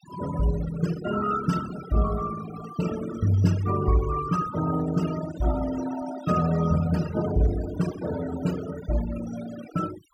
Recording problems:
noise reduction artefacts; signal-to-artefact ratio 11 dB

